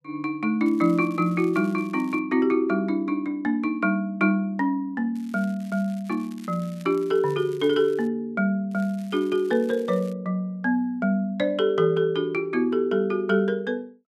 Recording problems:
crackling; from 0.5 to 2 s, from 5 to 8 s and from 8.5 to 10 s; loose cable, SNR 28 dB

